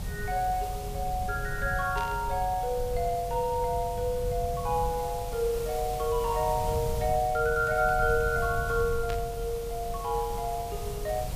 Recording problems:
background hiss; SNR 14 dB
low-frequency rumble; below 110 Hz, SNR 8 dB
burst of static; at 2 s and at 9 s; peak -7 dB vs average level

